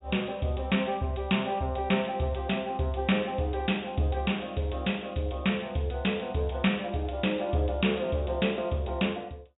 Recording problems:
low-pass filter; nothing above 4 kHz

